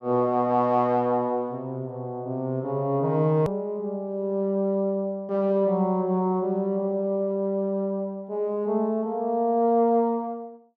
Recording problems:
hard cut with a click; at 3.5 s

